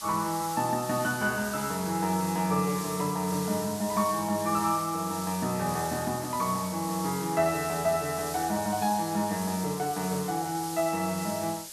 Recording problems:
background hiss; SNR 9 dB

